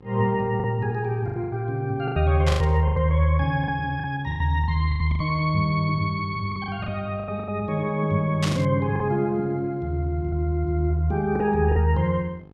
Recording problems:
electrical hum; 50 Hz, harmonics up to 1.3 kHz, SNR 26 dB
lost packets; 10% of the sound replaced, filled with the last packet
burst of static; at 2.5 s and at 8.5 s; peak -1 dB vs average level

